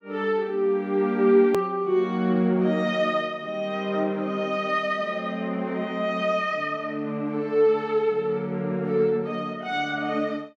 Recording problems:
hard cut with a click; at 1.5 s

